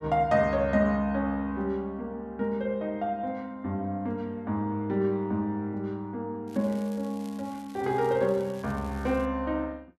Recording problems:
crackling; from 6.5 to 9.5 s; loose cable, SNR 24 dB

